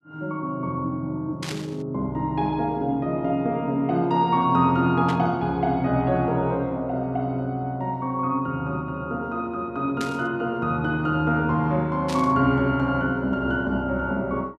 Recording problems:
static burst; 4 times, first at 1.5 s; peak -5 dB vs average level

